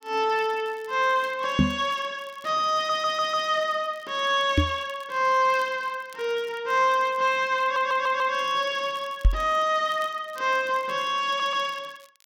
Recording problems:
crackling; vinyl, SNR 29 dB
knock on the microphone; at 1.5 s, at 4.5 s and at 9.5 s; peak +7 dB vs average level
stutter; at 3 s, at 7.5 s and at 11 s

